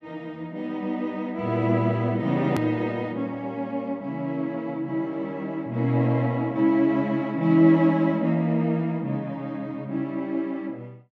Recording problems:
click at an edit; at 2.5 s

